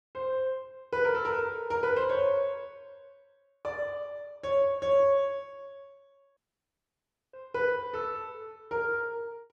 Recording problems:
dropout; at 6.5 s for 1 s

